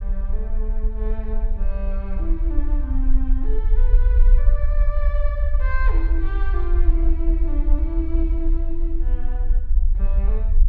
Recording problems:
low-frequency rumble; below 44 Hz, SNR -11 dB

